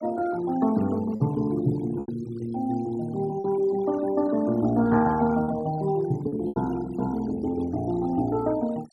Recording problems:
denoising artefacts; signal-to-artefact ratio 21 dB
lost packets; 4% of the sound replaced, filled with repeated pitch periods

